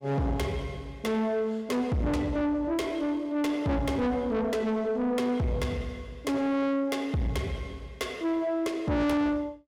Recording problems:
distorted audio; soft clipping, signal-to-distortion ratio 7 dB

